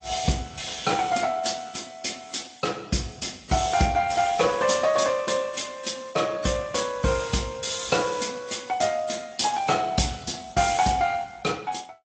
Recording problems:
lossy codec; Speex, then AAC, log-spectral distance 7 dB, nothing above 8 kHz

